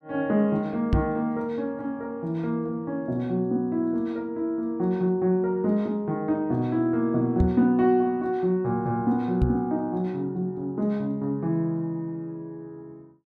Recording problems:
microphone thump; at 1 s, at 7.5 s and at 9.5 s; peak +6 dB vs average level

